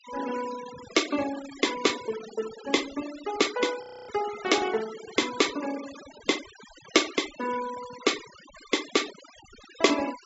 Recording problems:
treble missing; nothing above 8 kHz
noise reduction artefacts; signal-to-artefact ratio 13 dB
audio freezing; at 4 s

